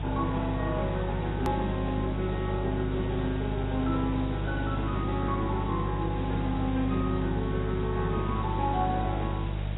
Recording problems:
lossy codec; AAC, log-spectral distance 8 dB, nothing above 13.1 kHz
hum; 50 Hz, harmonics up to 350 Hz, SNR 2 dB
hiss; SNR 11 dB
click at an edit; at 1.5 s

